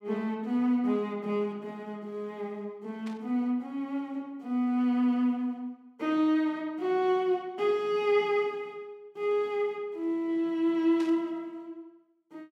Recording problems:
burst of static; at 3 s and at 11 s; peak -13 dB vs average level

